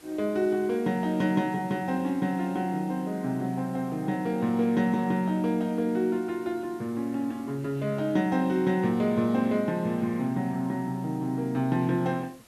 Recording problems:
background hiss; slope -3 dB per octave, SNR 26 dB

